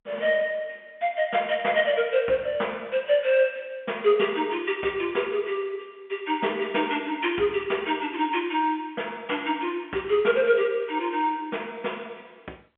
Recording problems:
phone line; 300 Hz to 3.3 kHz, G.711

